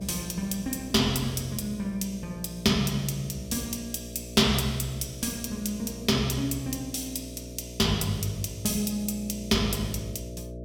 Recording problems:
hum; 60 Hz, harmonics up to 660 Hz, SNR 14 dB

